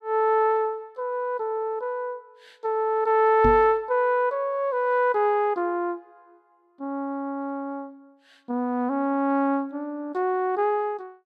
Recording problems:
knock on the microphone; at 3.5 s; peak +1 dB vs average level

